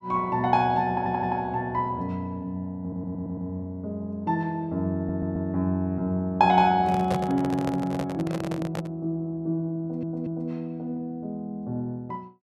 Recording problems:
audio stuttering; 4 times, first at 1 s
handling noise; from 7 to 9 s; peak +1 dB vs average level

